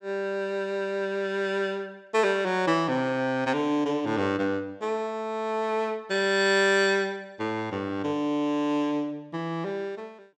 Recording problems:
none

